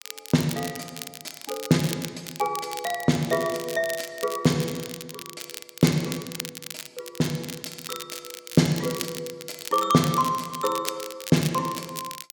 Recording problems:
crackling; vinyl, SNR 10 dB

